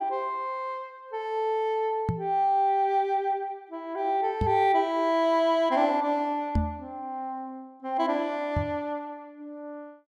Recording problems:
microphone bump; 4 times, first at 2 s; peak +4 dB vs average level

